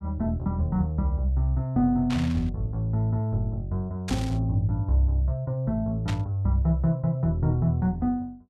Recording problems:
burst of static; at 2 s, at 4 s and at 6 s; peak -5 dB vs average level

